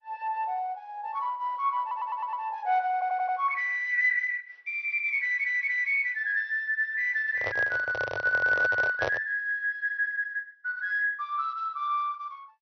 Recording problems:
lossy compression; MP2, log-spectral distance 2 dB, nothing above 5.3 kHz
audio stuttering; at 2 s, at 3 s and at 5 s
microphone handling noise; from 7.5 to 9.5 s; peak +1 dB vs average level

